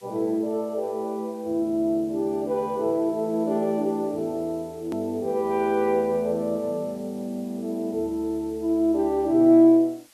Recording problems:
hiss; slope +1 dB per octave, SNR 29 dB
click at an edit; at 5 s

